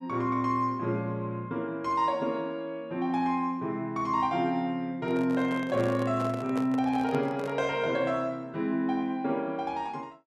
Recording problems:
microphone handling noise; from 5 to 7.5 s; peak -4 dB vs average level

